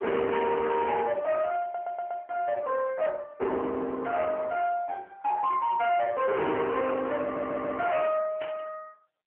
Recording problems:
telephone audio; 280 Hz to 3.2 kHz, AMR-NB
distortion; hard clipping, signal-to-distortion ratio 6 dB
stutter; at 1.5 s and at 7 s
static burst; at 8.5 s; peak -9 dB vs average level

